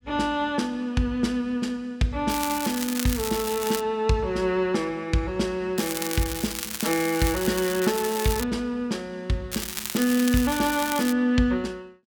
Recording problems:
crackle; from 2.5 to 4 s, from 6 to 8.5 s and from 9.5 to 11 s; loose cable, SNR 6 dB

